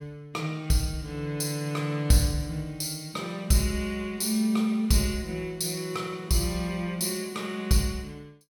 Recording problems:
none

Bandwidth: 17 kHz